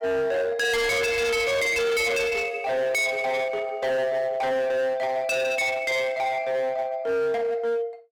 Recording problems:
distortion; hard clipping, uneven, signal-to-distortion ratio 7 dB

